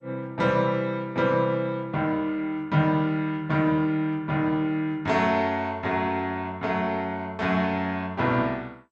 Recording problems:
lossy codec; MP2, log-spectral distance 2 dB

